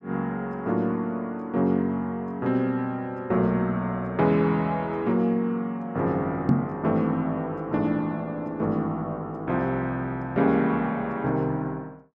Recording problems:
microphone thump; at 6.5 s; peak +8 dB vs average level

